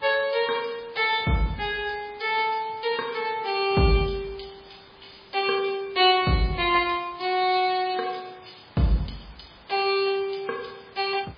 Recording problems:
codec artefacts; MP3, log-spectral distance 10 dB, nothing above 4.5 kHz
hiss; SNR 26 dB

